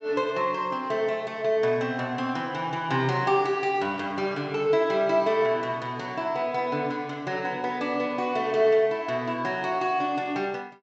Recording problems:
treble missing; nothing above 8 kHz

